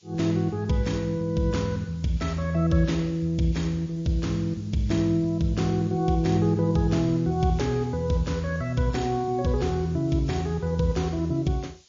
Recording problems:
lossy compression; MP3, log-spectral distance 3 dB, nothing above 6.9 kHz
background hiss; SNR 30 dB

